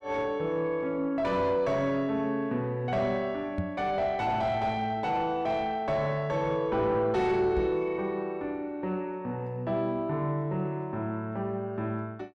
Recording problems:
distorted audio; soft clipping, signal-to-distortion ratio 11 dB
knock on the microphone; at 3.5 s and at 7.5 s; peak +1 dB vs average level

